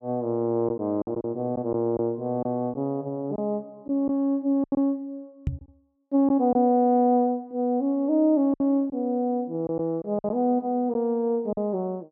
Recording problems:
packet loss; 5% of the sound replaced, filled with silence
microphone thump; at 5.5 s; peak +2 dB vs average level

